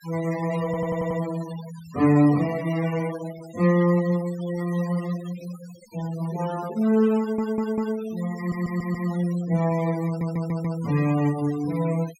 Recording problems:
noise reduction artefacts; signal-to-artefact ratio 18 dB
stutter; 4 times, first at 0.5 s

